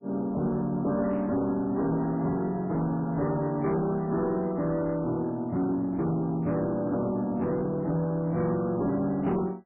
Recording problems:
codec artefacts; MP3, log-spectral distance 2 dB
distortion; soft clipping, signal-to-distortion ratio 11 dB

